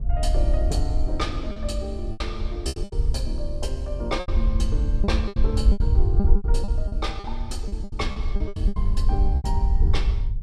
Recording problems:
wind on the microphone; below 62 Hz, SNR -7 dB
lost packets; 12% of the sound replaced, filled with repeated pitch periods

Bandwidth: 13.5 kHz